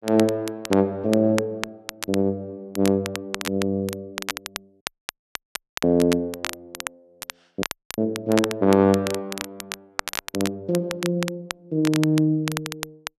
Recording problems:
crackle; vinyl, SNR 10 dB
dropout; at 5 s for 1 s and at 7.5 s

